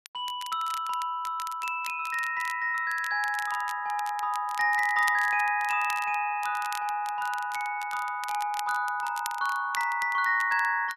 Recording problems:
crackling; vinyl, SNR 16 dB

